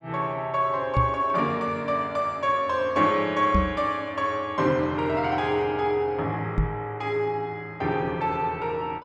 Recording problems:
microphone thump; at 1 s, at 3.5 s and at 6.5 s; peak +5 dB vs average level

